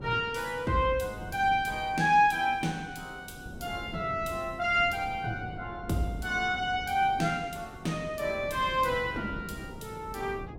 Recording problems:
wind on the microphone; below 310 Hz, SNR 15 dB

